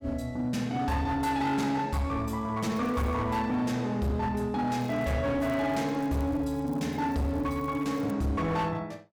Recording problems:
distortion; hard clipping, signal-to-distortion ratio 10 dB
crackling; at 2.5 s, at 4.5 s and from 5.5 to 8 s; loose cable, SNR 28 dB

